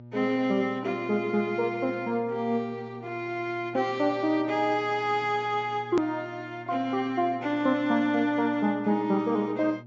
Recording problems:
low-pass filter; nothing above 8 kHz
hum; 60 Hz, harmonics up to 840 Hz, SNR 19 dB
click at an edit; at 6 s

